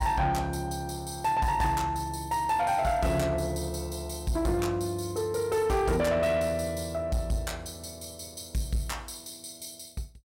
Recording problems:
distorted audio; soft clipping, signal-to-distortion ratio 10 dB

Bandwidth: 16 kHz